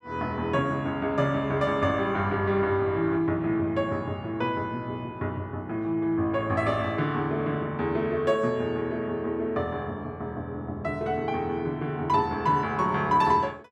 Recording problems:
none

